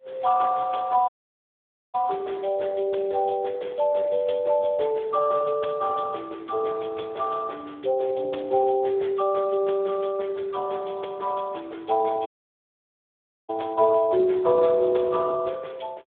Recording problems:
telephone audio; 320 Hz to 3.6 kHz, Speex
dropout; at 1 s for 1 s and at 12 s for 1 s

